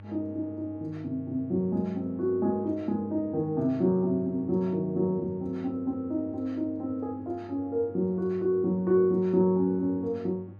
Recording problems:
hum; 50 Hz, harmonics up to 1.1 kHz, SNR 20 dB

